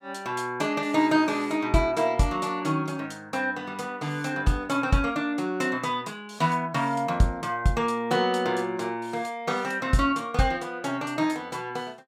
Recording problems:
none

